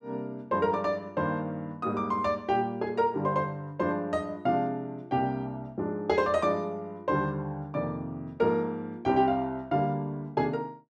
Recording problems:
none

